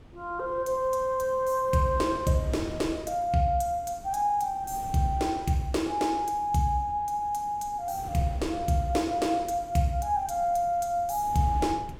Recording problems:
wind on the microphone; below 340 Hz, SNR 18 dB

